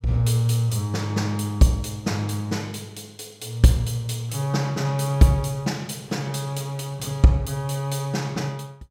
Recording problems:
none

